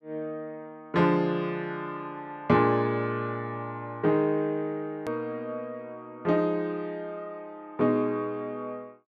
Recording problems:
click at an edit; at 5 s

